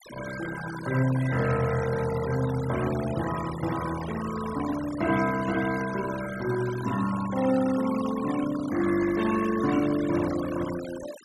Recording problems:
noise reduction artefacts; signal-to-artefact ratio 12 dB

